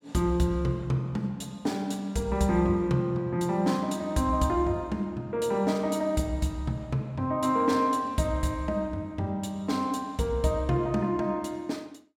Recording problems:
none

